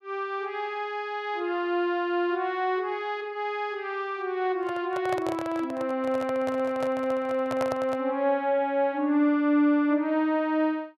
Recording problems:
handling noise; from 4.5 to 8 s; peak -1 dB vs average level

